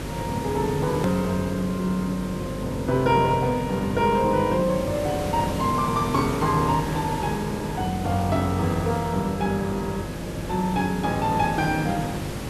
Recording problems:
electrical hum; 50 Hz, harmonics up to 600 Hz, SNR 10 dB
hiss; slope -4 dB per octave, SNR 10 dB
edit click; at 1 s

